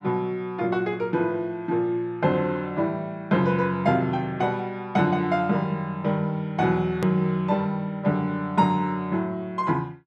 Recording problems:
edit click; at 7 s

